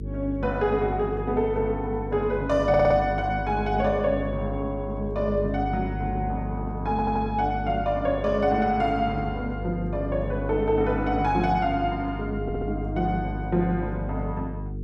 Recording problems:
electrical hum; 50 Hz, harmonics up to 450 Hz, SNR 7 dB
audio stuttering; at 2.5 s, at 7 s and at 12 s

